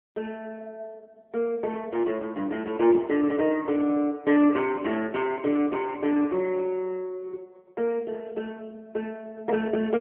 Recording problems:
telephone audio; 260 Hz to 3.2 kHz, AMR-NB

